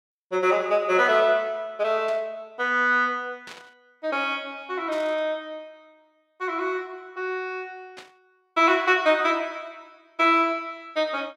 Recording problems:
burst of static; 4 times, first at 2 s; peak -13 dB vs average level

